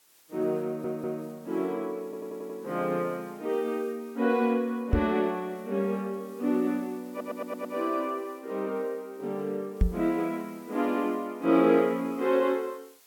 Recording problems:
background hiss; slope 0 dB per octave, SNR 27 dB
audio stuttering; at 0.5 s, at 2 s and at 7 s
microphone thump; at 5 s and at 10 s; peak +8 dB vs average level

